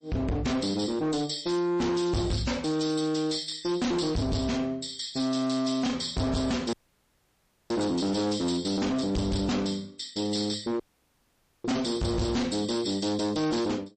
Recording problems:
lossy codec; MP3, log-spectral distance 5 dB, nothing above 8.2 kHz
distorted audio; hard clipping, uneven, signal-to-distortion ratio 6 dB
audio cutting out; at 6.5 s for 1 s and at 11 s for 1 s

